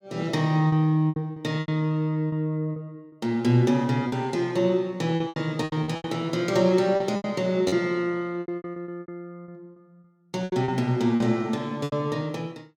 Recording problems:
lost packets; 12% of the sound replaced, filled with repeated pitch periods

